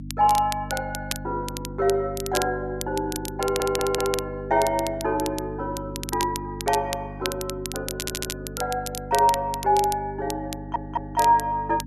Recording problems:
electrical hum; 50 Hz, harmonics up to 300 Hz, SNR 12 dB
crackle; vinyl, SNR 9 dB
audio stuttering; at 3.5 s, at 8 s and at 11 s

